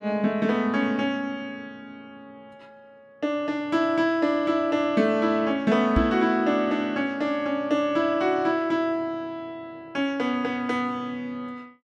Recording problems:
microphone bump; at 6 s; peak +4 dB vs average level

